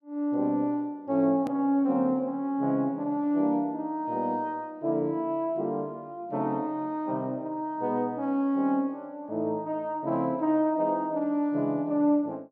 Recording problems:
click at an edit; at 1.5 s

